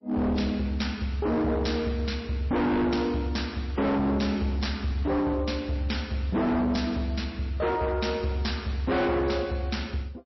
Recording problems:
codec artefacts; MP3, log-spectral distance 3 dB, nothing above 5.7 kHz
distortion; hard clipping, signal-to-distortion ratio 6 dB

